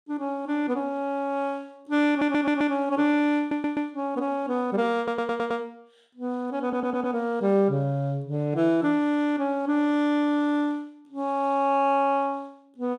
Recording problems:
stutter; 4 times, first at 2 s

